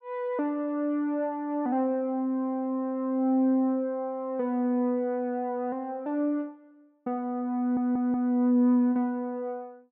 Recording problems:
stutter; at 7.5 s

